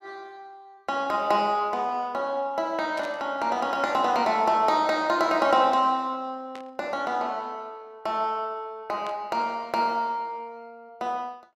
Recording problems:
burst of static; at 3 s, at 6.5 s and at 9 s; peak -12 dB vs average level

